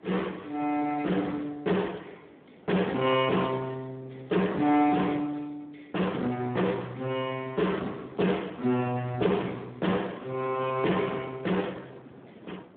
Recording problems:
telephone audio; 150 Hz to 3.4 kHz, Speex
distorted audio; hard clipping, uneven, signal-to-distortion ratio 13 dB
wind on the microphone; below 640 Hz, SNR 22 dB

